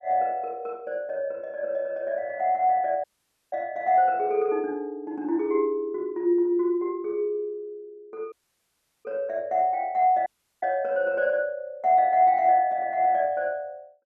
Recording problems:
audio cutting out; at 3 s, at 8.5 s for 0.5 s and at 10 s

